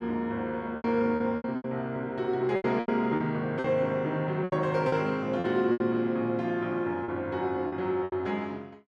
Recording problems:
packet loss; 10% of the sound replaced, filled with repeated pitch periods

